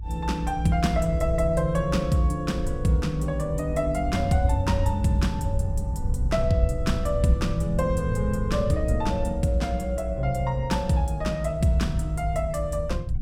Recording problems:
low-frequency rumble; below 82 Hz, SNR 5 dB

